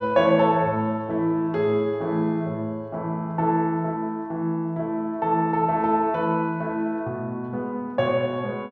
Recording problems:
none

